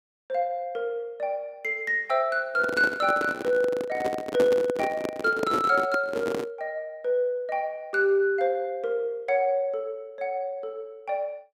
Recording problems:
microphone handling noise; from 2.5 to 6.5 s; peak +2 dB vs average level

